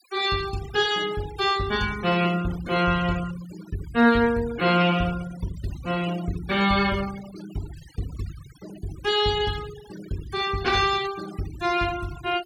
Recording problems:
denoising artefacts; signal-to-artefact ratio 17 dB

